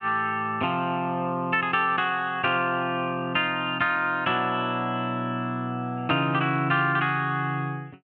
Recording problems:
none

